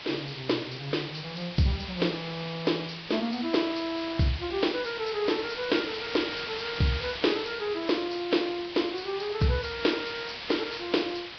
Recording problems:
lossy codec; Vorbis, log-spectral distance 15 dB, nothing above 5.2 kHz
hiss; SNR 8 dB

